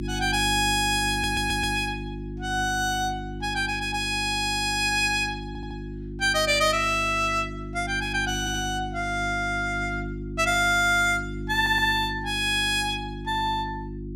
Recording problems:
hum; 50 Hz, harmonics up to 350 Hz, SNR 10 dB
stutter; 4 times, first at 1 s

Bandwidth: 16.5 kHz